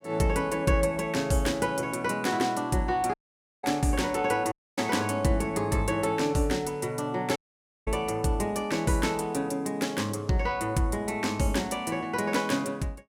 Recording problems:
audio cutting out; at 3 s, at 4.5 s and at 7.5 s for 0.5 s

